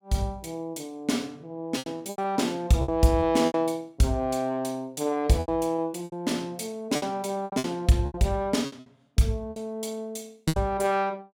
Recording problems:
packet loss; 10% of the sound replaced, filled with repeated pitch periods

